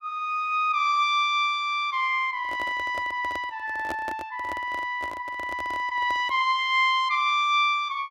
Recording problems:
microphone handling noise; from 2.5 to 6.5 s; peak -5 dB vs average level

